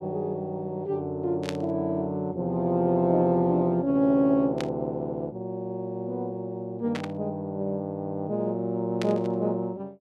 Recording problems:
static burst; 4 times, first at 1.5 s; peak -3 dB vs average level

